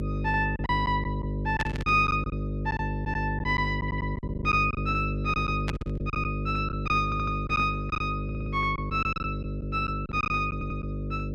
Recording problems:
electrical hum; 50 Hz, harmonics up to 600 Hz, SNR 3 dB
lost packets; 10% of the sound replaced, filled with silence
burst of static; at 1.5 s and at 5.5 s; peak 0 dB vs average level
audio stuttering; 4 times, first at 4 s

